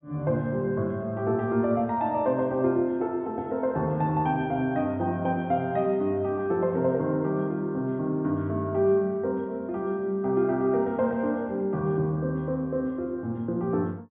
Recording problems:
treble missing; nothing above 4 kHz

